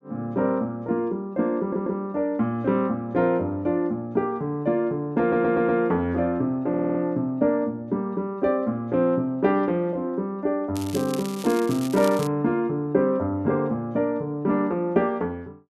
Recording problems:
audio stuttering; at 1.5 s, at 5 s and at 6.5 s
crackle; from 11 to 12 s; loose cable, SNR 15 dB

